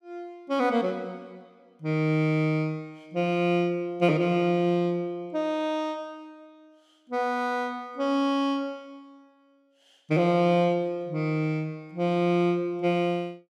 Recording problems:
none

